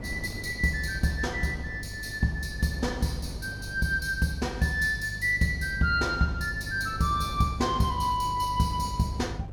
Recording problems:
hum; 50 Hz, harmonics up to 350 Hz, SNR 14 dB
wind on the microphone; below 350 Hz, SNR 15 dB

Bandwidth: 17.5 kHz